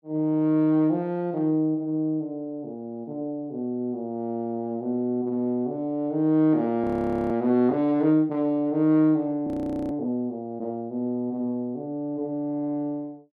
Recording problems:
frozen audio; at 7 s and at 9.5 s

